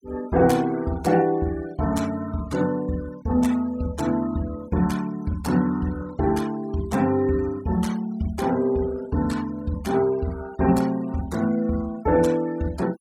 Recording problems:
noise reduction artefacts; signal-to-artefact ratio 20 dB

